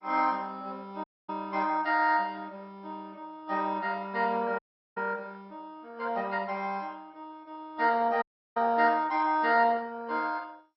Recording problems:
codec artefacts; MP2, log-spectral distance 3 dB, nothing above 4.6 kHz
dropout; at 1 s, at 4.5 s and at 8 s

